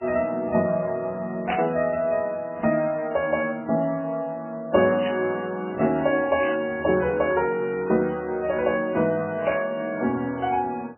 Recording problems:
codec artefacts; MP3, log-spectral distance 2 dB, nothing above 2.5 kHz
static burst; 4 times, first at 1.5 s; peak -2 dB vs average level

